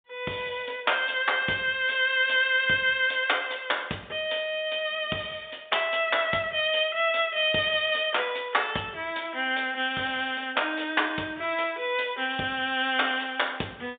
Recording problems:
phone line; 190 Hz to 3.7 kHz, G.711

